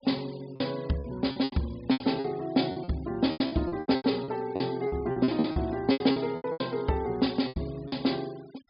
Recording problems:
low-pass filter; nothing above 5.5 kHz
noise reduction artefacts; signal-to-artefact ratio 23 dB
packet loss; 16% of the sound replaced, filled with repeated pitch periods

